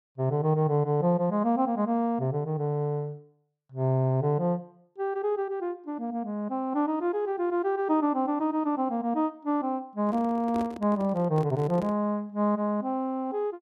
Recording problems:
microphone handling noise; from 10 to 12 s; peak -7 dB vs average level

